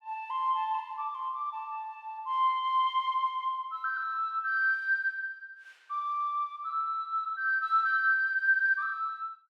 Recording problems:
none

